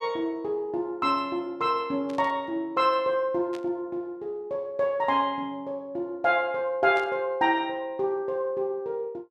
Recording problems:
burst of static; at 2 s, at 3.5 s and at 7 s; peak -13 dB vs average level

